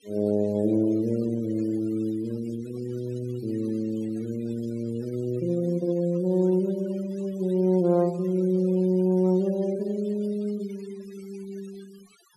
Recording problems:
noise reduction artefacts; signal-to-artefact ratio 25 dB

